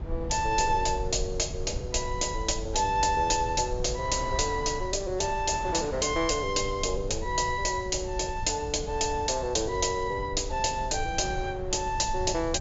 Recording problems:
treble cut off; nothing above 7.5 kHz
rumble; below 96 Hz, SNR 10 dB
wind noise; below 900 Hz, SNR 21 dB

